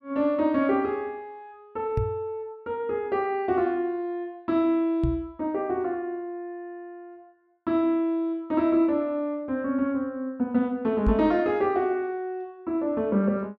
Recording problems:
knock on the microphone; at 2 s, at 5 s and at 11 s; peak +4 dB vs average level

